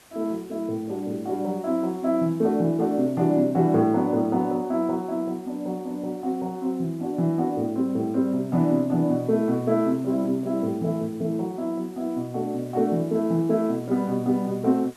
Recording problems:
background hiss; slope -2 dB per octave, SNR 27 dB

